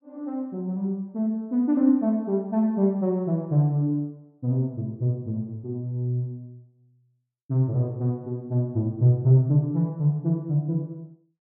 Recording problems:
none

